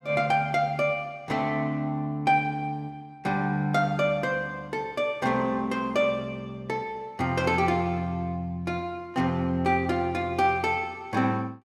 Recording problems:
none

